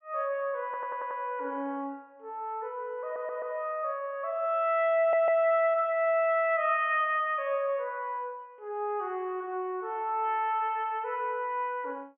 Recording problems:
low-pass filter; nothing above 3.3 kHz
stutter; at 0.5 s, at 3 s and at 5 s

